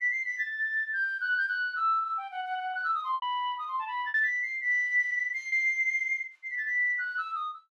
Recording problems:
lost packets; 3% of the sound replaced, filled with repeated pitch periods

